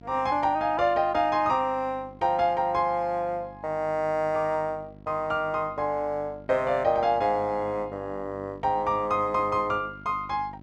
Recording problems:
hum; 50 Hz, harmonics up to 1.3 kHz, SNR 21 dB

